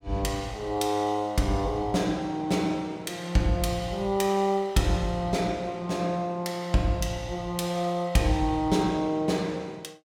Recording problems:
none

